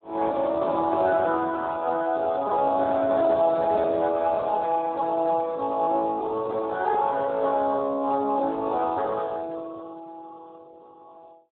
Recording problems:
telephone audio; 300 Hz to 2.2 kHz, Speex

